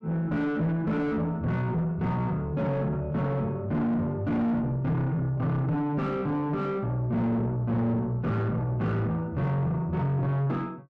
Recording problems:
distortion; soft clipping, signal-to-distortion ratio 7 dB

